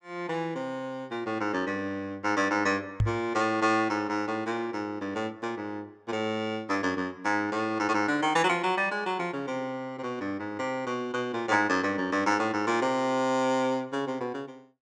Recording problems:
knock on the microphone; at 3 s; peak +6 dB vs average level

